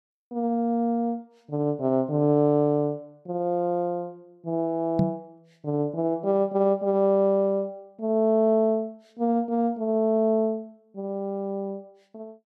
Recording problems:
microphone bump; at 5 s; peak +5 dB vs average level

